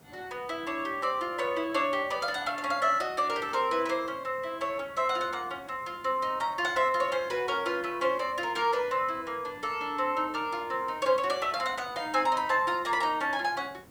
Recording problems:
background hiss; slope -6 dB per octave, SNR 25 dB

